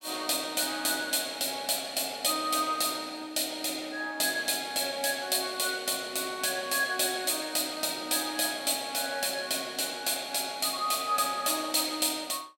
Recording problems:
none

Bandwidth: 17 kHz